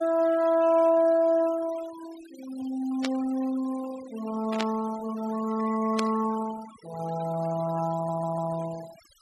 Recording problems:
denoising artefacts; signal-to-artefact ratio 18 dB
burst of static; at 3 s, at 4.5 s and at 6 s; peak -1 dB vs average level
audio stuttering; at 8 s

